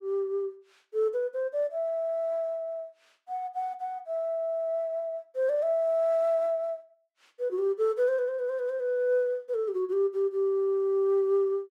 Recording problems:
none

